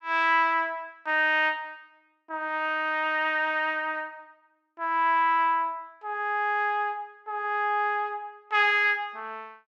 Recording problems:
none

